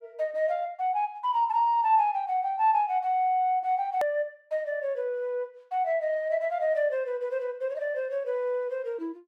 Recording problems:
edit click; at 4 s

